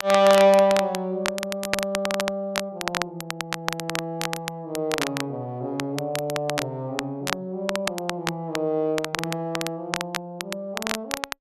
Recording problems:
crackle; vinyl, SNR 5 dB

